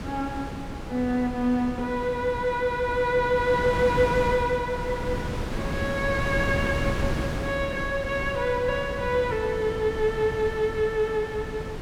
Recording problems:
wind on the microphone; below 480 Hz, SNR 7 dB

